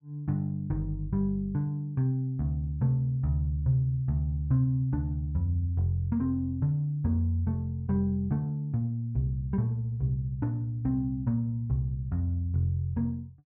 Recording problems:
none

